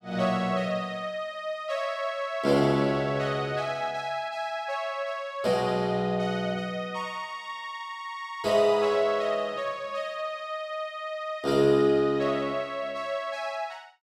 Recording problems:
none

